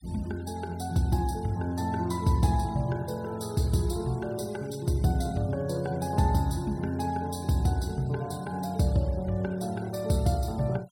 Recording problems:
denoising artefacts; signal-to-artefact ratio 24 dB

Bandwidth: 16.5 kHz